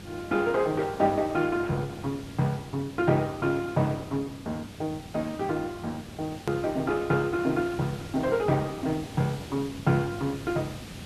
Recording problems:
lossy codec; Opus, log-spectral distance 2 dB, nothing above 13.1 kHz
electrical hum; 50 Hz, harmonics up to 1 kHz, SNR 22 dB
hiss; SNR 15 dB
click at an edit; at 6.5 s

